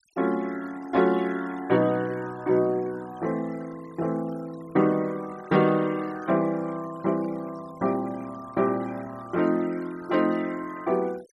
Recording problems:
noise reduction artefacts; signal-to-artefact ratio 21 dB

